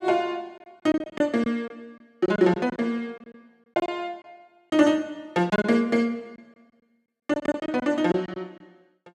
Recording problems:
lost packets; 10% of the sound replaced, filled with silence

